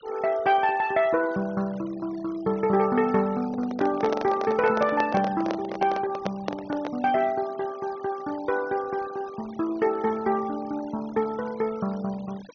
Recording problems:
treble missing; nothing above 6.3 kHz
denoising artefacts; signal-to-artefact ratio 20 dB
handling noise; from 3.5 to 7 s; peak 0 dB vs average level

